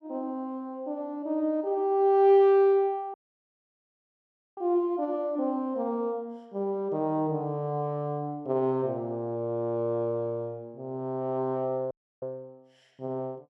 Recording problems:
dropout; at 3 s for 1.5 s and at 12 s

